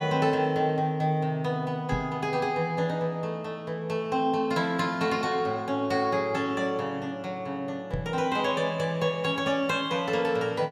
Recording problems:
knock on the microphone; at 2 s and at 8 s; peak 0 dB vs average level

